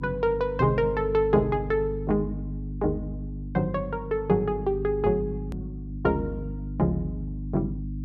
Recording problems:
mains hum; 50 Hz, harmonics up to 300 Hz, SNR 8 dB
click at an edit; at 5.5 s

